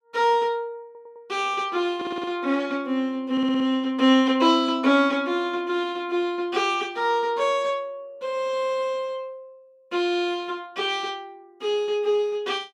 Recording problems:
audio stuttering; at 1 s, at 2 s and at 3.5 s

